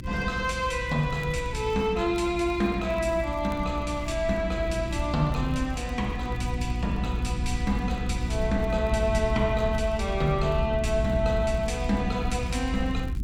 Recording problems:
electrical hum; 60 Hz, harmonics up to 360 Hz, SNR 8 dB
low-frequency rumble; below 74 Hz, SNR 7 dB
crackling; vinyl, SNR 29 dB

